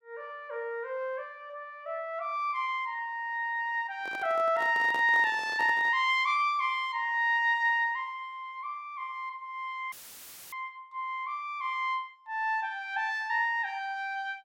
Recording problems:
microphone handling noise; from 4 to 6 s; peak -7 dB vs average level
dropout; at 10 s for 0.5 s; filled with static

